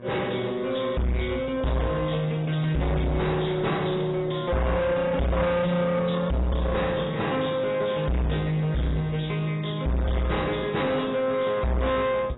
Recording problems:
codec artefacts; AAC, log-spectral distance 4 dB, nothing above 3.9 kHz
distortion; soft clipping, signal-to-distortion ratio 6 dB
electrical hum; 60 Hz, harmonics up to 1.7 kHz, SNR 19 dB

